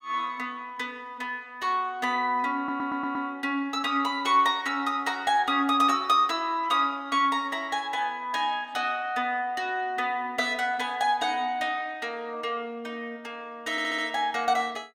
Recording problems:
audio stuttering; at 2.5 s and at 14 s

